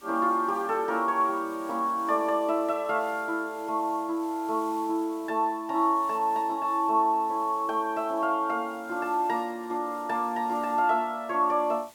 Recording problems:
background hiss; slope -1 dB per octave, SNR 25 dB

